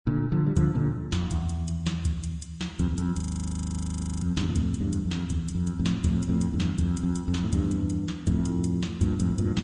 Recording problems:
codec artefacts; MP3, then Vorbis, log-spectral distance 2 dB, nothing above 9.2 kHz
audio freezing; at 3 s for 1 s

